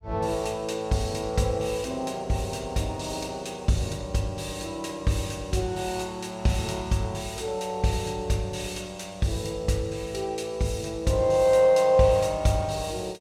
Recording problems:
none

